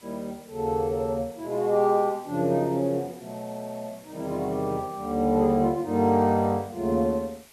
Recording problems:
hiss; slope -1 dB per octave, SNR 26 dB

